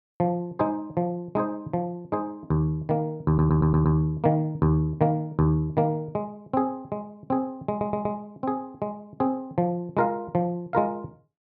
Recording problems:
audio stuttering; at 3.5 s and at 7.5 s

